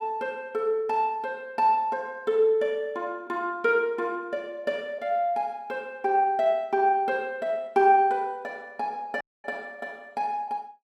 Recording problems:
audio cutting out; at 9 s

